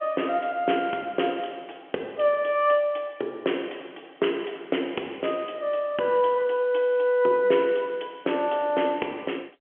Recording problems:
phone line; 260 Hz to 3.3 kHz, G.711

